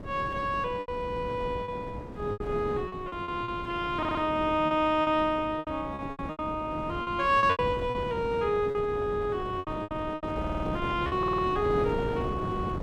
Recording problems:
wind on the microphone; below 430 Hz, SNR 9 dB
packet loss; 10% of the sound replaced, filled with repeated pitch periods
audio stuttering; at 4 s, at 10 s and at 11 s

